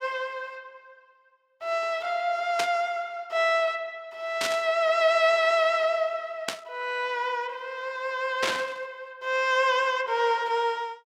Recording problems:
static burst; 4 times, first at 2.5 s; peak +2 dB vs average level

